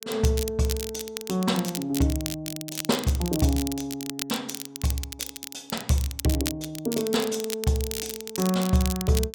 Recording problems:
crackle; vinyl, SNR 7 dB

